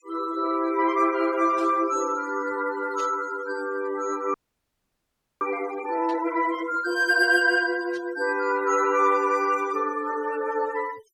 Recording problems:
denoising artefacts; signal-to-artefact ratio 19 dB
static burst; 4 times, first at 1.5 s; peak -14 dB vs average level
frozen audio; at 4.5 s for 1 s

